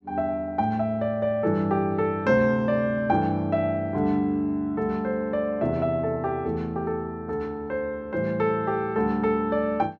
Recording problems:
none

